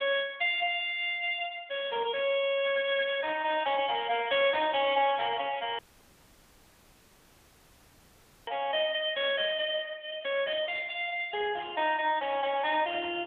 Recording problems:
telephone audio; 320 Hz to 3.6 kHz, AMR-NB
dropout; at 6 s for 2.5 s

